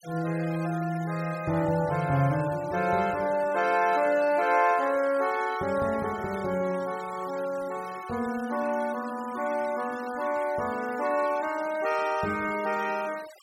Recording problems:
denoising artefacts; signal-to-artefact ratio 18 dB

